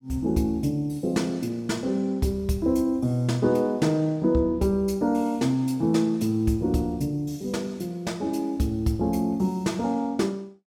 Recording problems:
none

